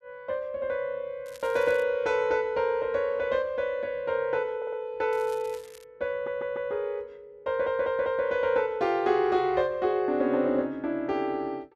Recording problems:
crackling; at 1.5 s and at 5 s; loose cable, SNR 25 dB
audio stuttering; at 4.5 s, at 6 s and at 7.5 s

